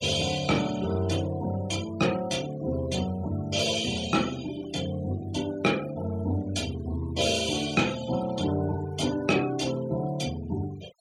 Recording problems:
denoising artefacts; signal-to-artefact ratio 17 dB

